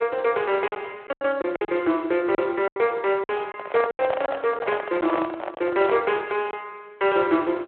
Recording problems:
telephone audio; 280 Hz to 3.4 kHz, Speex
packet loss; 8% of the sound replaced, filled with silence
microphone handling noise; from 3.5 to 6 s; peak 0 dB vs average level

